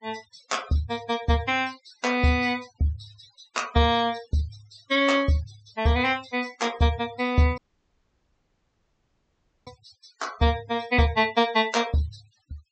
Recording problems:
treble missing; nothing above 8 kHz
denoising artefacts; signal-to-artefact ratio 20 dB
audio cutting out; at 7.5 s for 2 s

